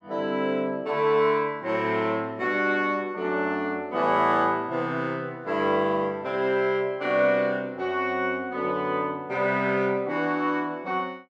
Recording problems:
none

